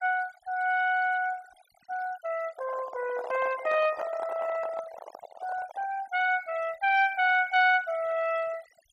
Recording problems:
denoising artefacts; signal-to-artefact ratio 19 dB
handling noise; from 2.5 to 6 s; peak -4 dB vs average level

